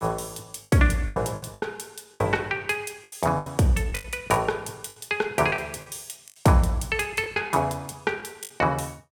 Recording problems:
lost packets; 11% of the sound replaced, filled with the last packet

